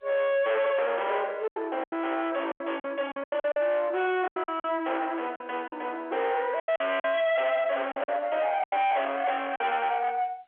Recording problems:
telephone audio; 390 Hz to 3.4 kHz, G.711
distortion; soft clipping, signal-to-distortion ratio 6 dB
packet loss; 10% of the sound replaced, filled with silence

